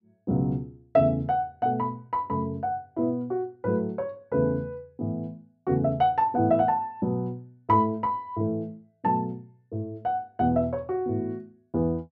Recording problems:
none

